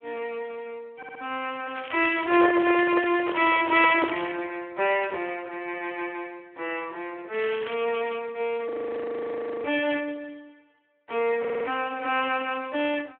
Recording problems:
telephone audio; 300 Hz to 3.4 kHz, Speex
stutter; at 1 s and at 11 s
crackling; from 2 to 4.5 s and at 7.5 s; loose cable, SNR 11 dB
microphone handling noise; from 2 to 4 s; peak +1 dB vs average level
audio freezing; at 8.5 s for 1 s

